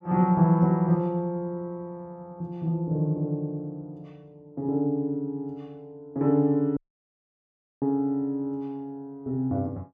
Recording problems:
dropout; at 7 s for 1 s

